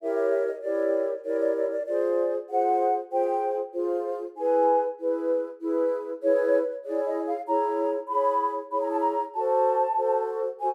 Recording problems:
none

